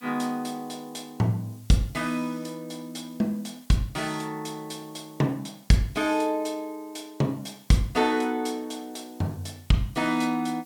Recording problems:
hiss; slope +1 dB per octave, SNR 26 dB

